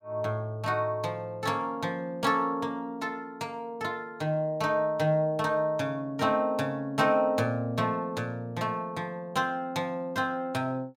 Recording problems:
none

